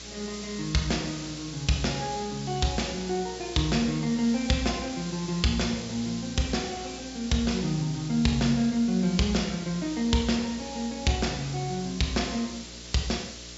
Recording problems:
treble missing; nothing above 8 kHz
hum; 60 Hz, harmonics up to 660 Hz, SNR 20 dB
hiss; slope +4 dB per octave, SNR 12 dB

